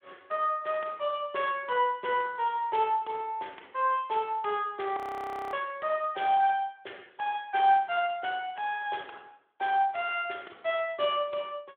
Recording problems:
phone line; 320 Hz to 3.5 kHz, Speex
audio freezing; at 5 s for 0.5 s

